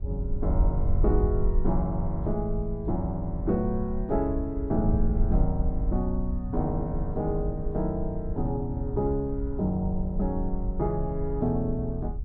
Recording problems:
wind noise; below 64 Hz, SNR 3 dB

